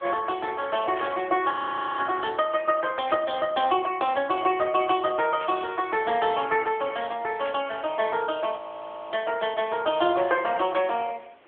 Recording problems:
telephone audio; 280 Hz to 3.4 kHz, AMR-NB
background hiss; SNR 29 dB
burst of static; 4 times, first at 1 s; peak -7 dB vs average level
audio freezing; at 1.5 s and at 8.5 s for 0.5 s

